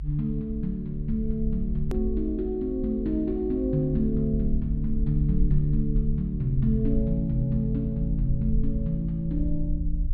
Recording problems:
low-pass filter; nothing above 4.8 kHz
rumble; below 52 Hz, SNR 5 dB
click at an edit; at 2 s

